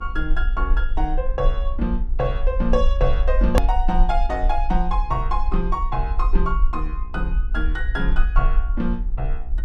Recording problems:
hum; 60 Hz, harmonics up to 1.6 kHz, SNR 22 dB
low-frequency rumble; below 44 Hz, SNR -2 dB
hard cut with a click; at 3.5 s

